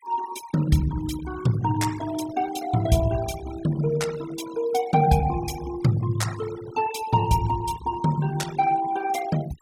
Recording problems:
noise reduction artefacts; signal-to-artefact ratio 16 dB

